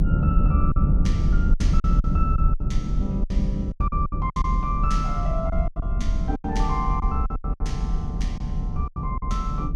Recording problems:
low-frequency rumble; below 110 Hz, SNR -6 dB
lost packets; 12% of the sound replaced, filled with silence

